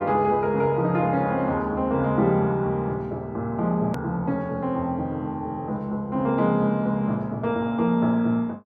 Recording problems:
click at an edit; at 4 s

